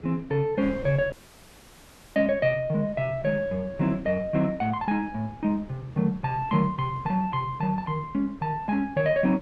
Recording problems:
wind on the microphone; below 370 Hz, SNR 20 dB
dropout; at 1 s for 1 s

